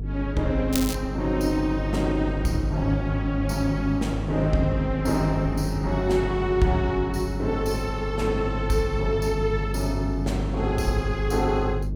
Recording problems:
electrical hum; 50 Hz, harmonics up to 450 Hz, SNR 5 dB
wind on the microphone; below 250 Hz, SNR 17 dB
crackling; at 0.5 s; loose cable, SNR 7 dB

